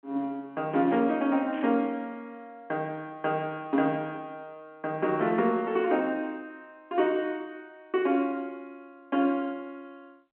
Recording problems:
phone line; 190 Hz to 3.3 kHz, G.711
burst of static; at 1.5 s; peak -12 dB vs average level

